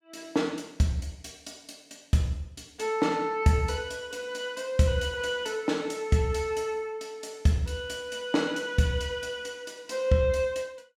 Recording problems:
none

